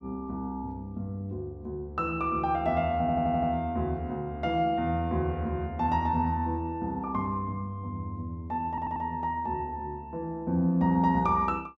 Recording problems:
stutter; at 3 s and at 8.5 s

